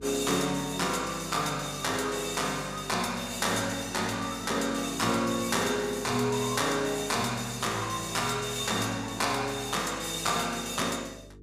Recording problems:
hum; 50 Hz, harmonics up to 450 Hz, SNR 21 dB

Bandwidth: 15 kHz